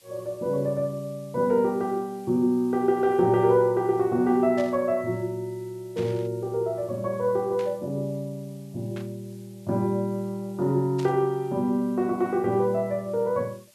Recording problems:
hiss; SNR 30 dB
static burst; 5 times, first at 4.5 s; peak -12 dB vs average level

